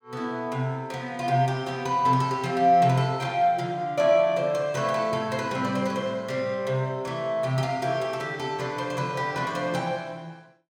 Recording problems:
none

